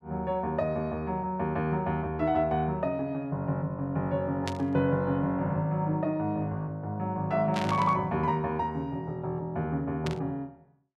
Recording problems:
burst of static; at 4.5 s, at 7.5 s and at 10 s; peak -2 dB vs average level

